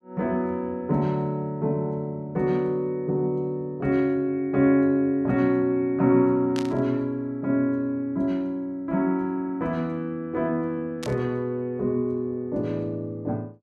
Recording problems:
burst of static; at 6.5 s and at 11 s; peak -6 dB vs average level

